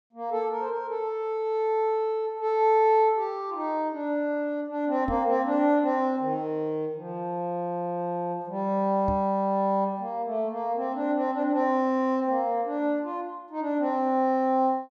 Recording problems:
microphone thump; at 5 s and at 9 s; peak -2 dB vs average level

